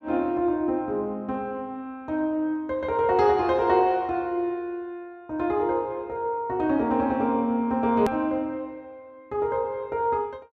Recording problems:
edit click; at 8 s

